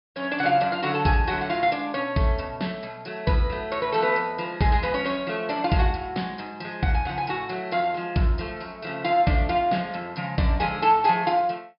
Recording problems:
low-pass filter; nothing above 5.5 kHz

